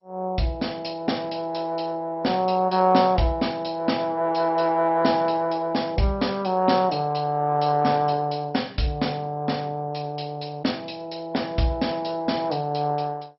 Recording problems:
lossy compression; MP2, log-spectral distance 4 dB, nothing above 5.5 kHz

